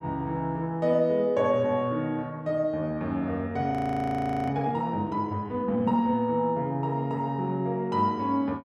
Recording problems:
frozen audio; at 3.5 s for 1 s

